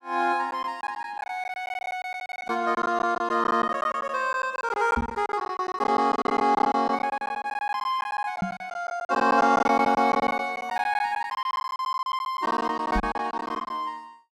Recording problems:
lost packets; 16% of the sound replaced, filled with silence
knock on the microphone; at 5 s, at 8.5 s and at 13 s; peak +1 dB vs average level

